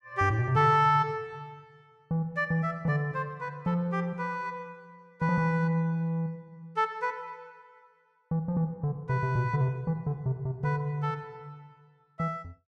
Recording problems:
none

